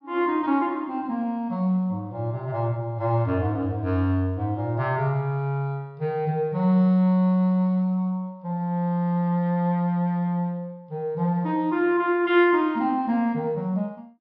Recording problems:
treble missing; nothing above 5.5 kHz

